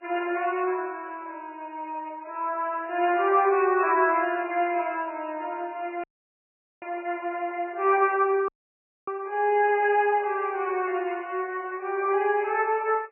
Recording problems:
codec artefacts; MP3, then MP3, log-spectral distance 3 dB, nothing above 2.6 kHz
dropout; at 6 s for 1 s and at 8.5 s for 0.5 s

